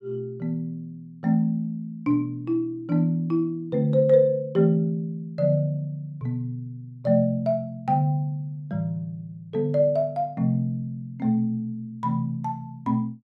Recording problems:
none

